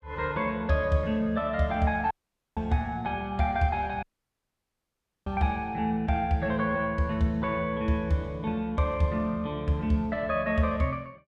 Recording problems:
dropout; at 2 s and at 4 s for 1 s

